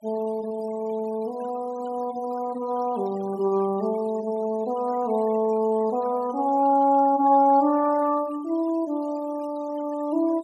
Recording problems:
denoising artefacts; signal-to-artefact ratio 23 dB

